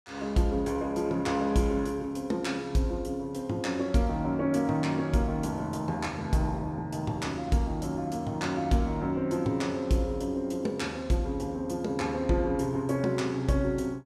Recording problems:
none

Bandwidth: 15 kHz